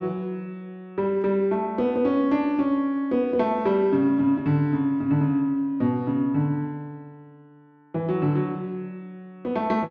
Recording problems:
none

